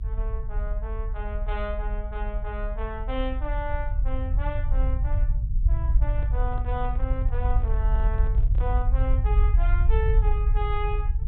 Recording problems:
treble cut off; nothing above 4 kHz
low-frequency rumble; below 58 Hz, SNR -8 dB
microphone handling noise; from 6 to 9 s; peak -8 dB vs average level

